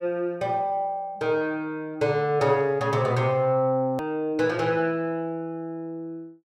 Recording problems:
edit click; at 4 s

